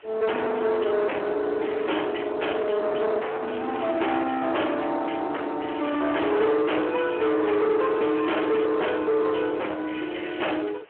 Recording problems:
phone line; 280 Hz to 3.2 kHz, Speex
distorted audio; soft clipping, signal-to-distortion ratio 5 dB
background hiss; SNR 27 dB

